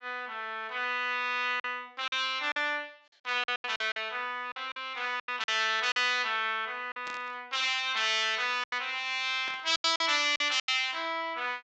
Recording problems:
low-pass filter; nothing above 8 kHz
lost packets; 8% of the sound replaced, filled with silence
static burst; at 7 s and at 9.5 s; peak -10 dB vs average level

